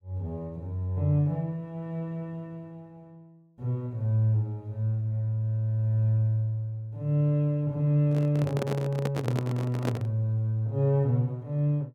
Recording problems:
handling noise; from 8 to 10 s; peak 0 dB vs average level

